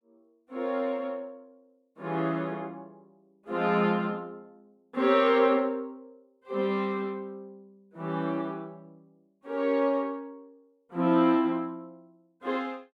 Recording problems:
none

